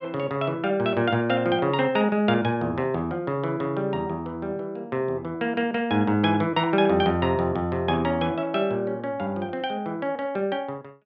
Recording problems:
none

